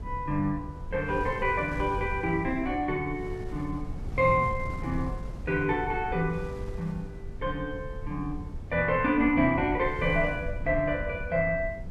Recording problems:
rumble; below 98 Hz, SNR 11 dB
wind on the microphone; below 220 Hz, SNR 16 dB

